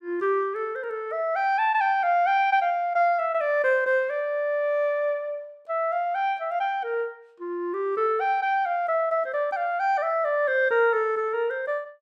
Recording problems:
none

